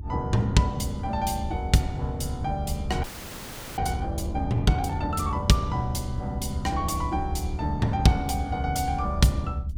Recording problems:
rumble; below 78 Hz, SNR 7 dB
frozen audio; at 3 s for 0.5 s

